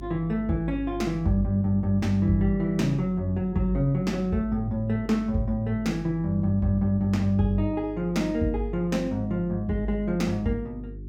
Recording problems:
electrical hum; 50 Hz, harmonics up to 400 Hz, SNR 14 dB

